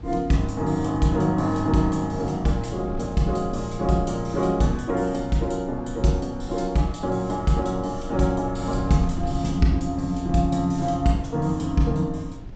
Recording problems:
treble missing; nothing above 8 kHz
wind on the microphone; below 110 Hz, SNR 13 dB

